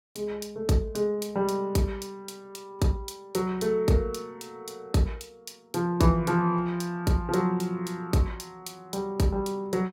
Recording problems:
none

